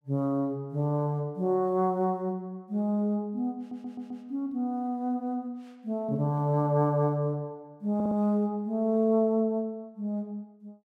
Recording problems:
audio stuttering; at 3.5 s and at 8 s

